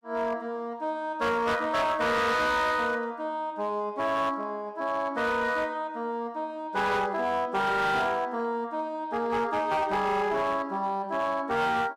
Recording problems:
distortion; hard clipping, signal-to-distortion ratio 11 dB

